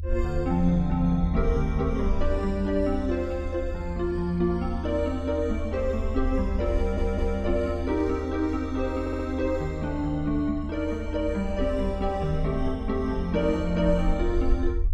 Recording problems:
low-frequency rumble; below 78 Hz, SNR 5 dB
stutter; at 7 s and at 9 s

